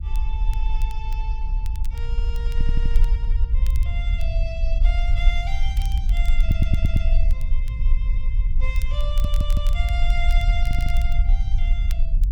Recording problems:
low-frequency rumble; below 52 Hz, SNR -12 dB
crackling; vinyl, SNR 13 dB
stutter; 4 times, first at 2.5 s

